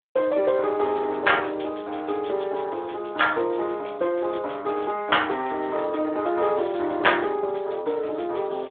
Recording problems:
telephone audio; 320 Hz to 3.5 kHz, Speex

